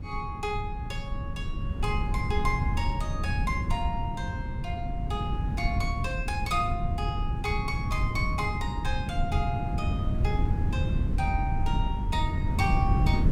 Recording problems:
wind noise; below 130 Hz, SNR -3 dB

